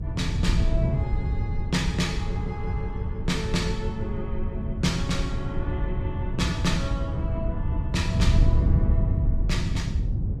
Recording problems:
hum; 50 Hz, harmonics up to 450 Hz, SNR 22 dB
wind noise; below 120 Hz, SNR -4 dB

